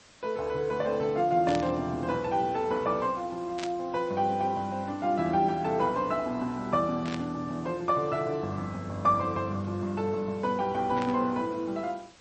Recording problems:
lossy compression; MP3, log-spectral distance 2 dB, nothing above 7.8 kHz
background hiss; slope -1 dB per octave, SNR 25 dB
burst of static; 4 times, first at 1.5 s; peak -4 dB vs average level

